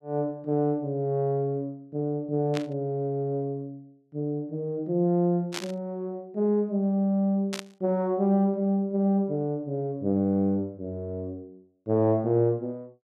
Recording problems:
static burst; at 2.5 s, at 5.5 s and at 7.5 s; peak -1 dB vs average level

